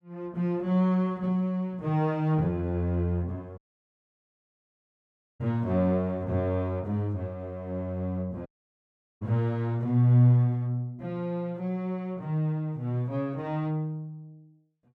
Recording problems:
dropout; at 3.5 s for 2 s and at 8.5 s for 1 s

